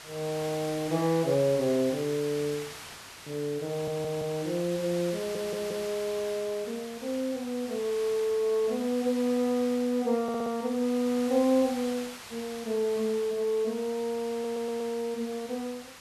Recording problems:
hiss; slope 0 dB per octave, SNR 13 dB
audio stuttering; 4 times, first at 3.5 s

